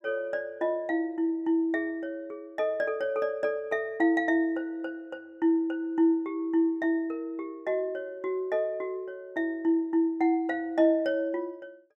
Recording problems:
none

